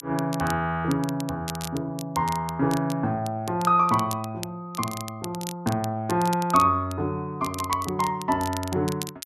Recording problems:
crackle; vinyl, SNR 13 dB

